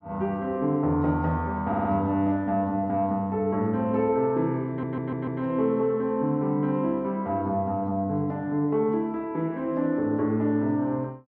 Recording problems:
stutter; at 1.5 s and at 4.5 s

